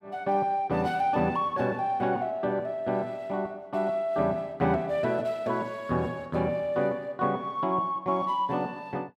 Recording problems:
none

